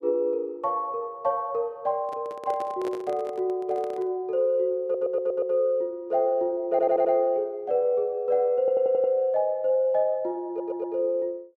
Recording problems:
microphone handling noise; from 2 to 4 s; peak -7 dB vs average level
audio stuttering; 4 times, first at 5 s

